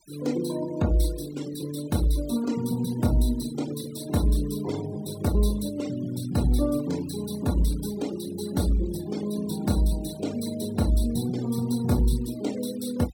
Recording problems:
denoising artefacts; signal-to-artefact ratio 18 dB

